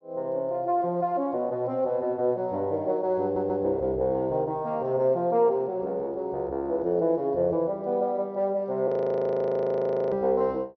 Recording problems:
low-pass filter; nothing above 6.1 kHz
audio stuttering; at 3 s
audio freezing; at 9 s for 1 s

